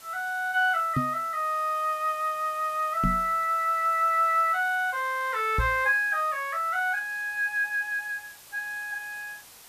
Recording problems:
hiss; slope 0 dB per octave, SNR 21 dB
knock on the microphone; at 1 s, at 3 s and at 5.5 s; peak +2 dB vs average level

